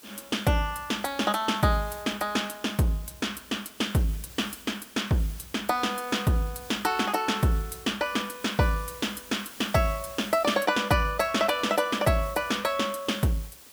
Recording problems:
hiss; slope 0 dB per octave, SNR 19 dB

